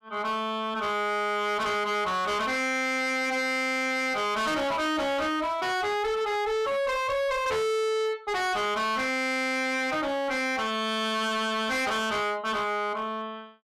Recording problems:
distortion; hard clipping, signal-to-distortion ratio 7 dB

